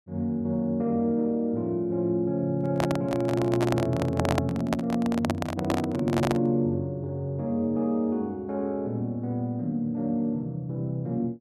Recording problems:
handling noise; from 2.5 to 6.5 s; peak +5 dB vs average level

